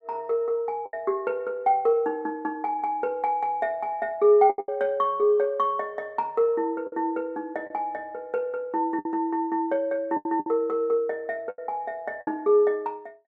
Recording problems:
packet loss; 5% of the sound replaced, filled with the last packet

